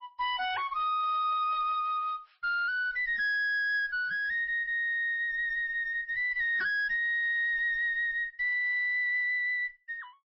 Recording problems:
codec artefacts; MP3, log-spectral distance 2 dB, nothing above 5 kHz
distorted audio; soft clipping, signal-to-distortion ratio 8 dB

